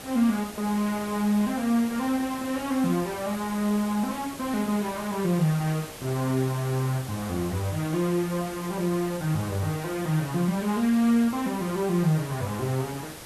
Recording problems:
hiss; slope -3 dB per octave, SNR 13 dB

